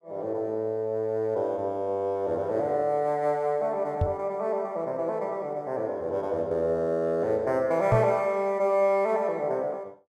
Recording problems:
knock on the microphone; at 4 s and at 8 s; peak +5 dB vs average level

